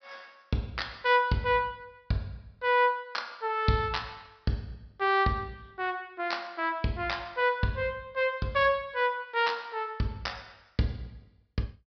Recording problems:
treble missing; nothing above 5.5 kHz

